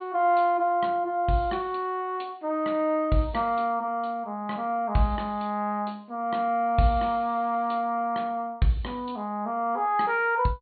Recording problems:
treble missing; nothing above 4.4 kHz

